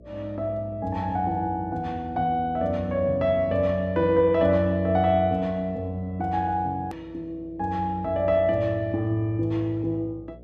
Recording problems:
hum; 60 Hz, harmonics up to 660 Hz, SNR 23 dB
hard cut with a click; at 7 s

